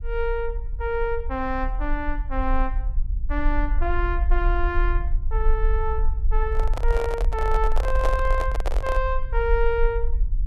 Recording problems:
rumble; below 46 Hz, SNR -1 dB
microphone handling noise; from 6.5 to 9 s; peak +2 dB vs average level

